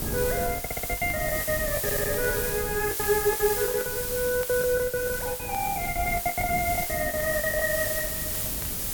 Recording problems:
background hiss; slope 0 dB per octave, SNR 1 dB
wind on the microphone; below 240 Hz, SNR 10 dB
crackle; vinyl, SNR 24 dB
lost packets; 16% of the sound replaced, filled with the last packet
audio stuttering; at 0.5 s and at 2 s

